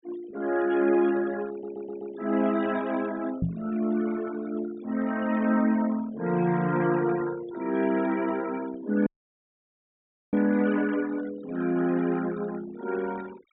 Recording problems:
low-pass filter; nothing above 4 kHz
denoising artefacts; signal-to-artefact ratio 18 dB
audio stuttering; at 1.5 s
knock on the microphone; at 3.5 s; peak +3 dB vs average level
audio cutting out; at 9 s for 1.5 s

